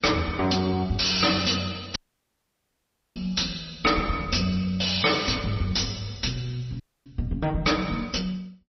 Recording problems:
lossy compression; MP3, log-spectral distance 8 dB, nothing above 5.8 kHz
distorted audio; hard clipping, signal-to-distortion ratio 7 dB
dropout; at 2 s for 1 s and at 7 s

